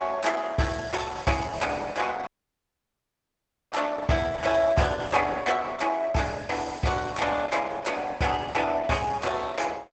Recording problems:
codec artefacts; Opus, log-spectral distance 5 dB, nothing above 8 kHz
audio cutting out; at 2.5 s for 1.5 s

